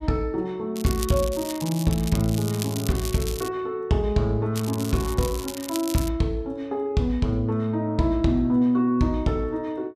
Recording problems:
crackling; from 1 to 3.5 s and from 4.5 to 6 s; loose cable, SNR 11 dB

